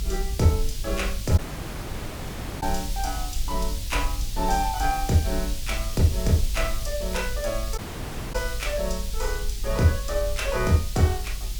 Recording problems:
hiss; slope +6 dB per octave, SNR 10 dB
low-frequency rumble; below 50 Hz, SNR 6 dB
audio cutting out; at 1.5 s for 1 s and at 8 s for 0.5 s

